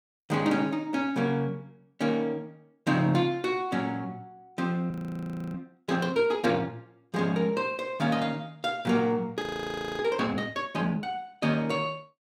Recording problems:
frozen audio; at 5 s for 0.5 s and at 9.5 s for 0.5 s

